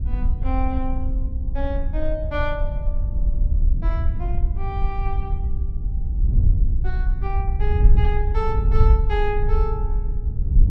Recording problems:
wind on the microphone; below 66 Hz, SNR -7 dB

